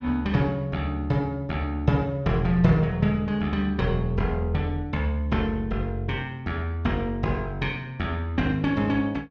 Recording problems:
none

